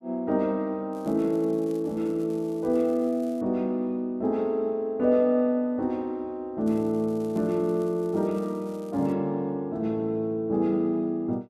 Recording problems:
crackle; from 1 to 3.5 s and from 6.5 to 9 s; loose cable, SNR 29 dB

